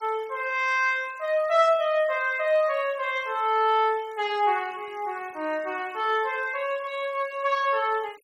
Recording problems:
noise reduction artefacts; signal-to-artefact ratio 25 dB

